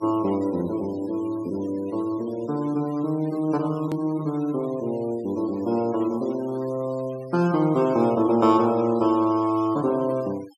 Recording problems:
denoising artefacts; signal-to-artefact ratio 22 dB
edit click; at 4 s

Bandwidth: 14 kHz